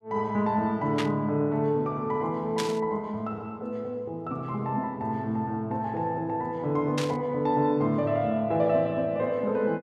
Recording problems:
burst of static; at 1 s, at 2.5 s and at 7 s; peak 0 dB vs average level

